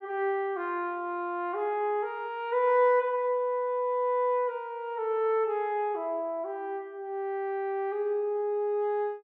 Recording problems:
none

